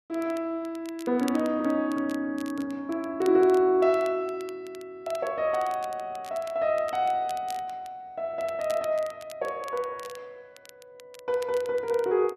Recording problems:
crackling; vinyl, SNR 22 dB

